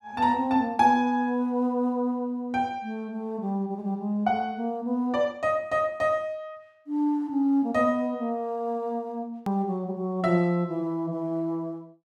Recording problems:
click at an edit; at 9.5 s

